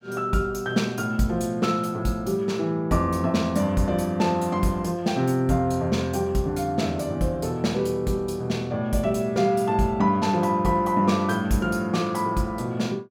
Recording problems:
none

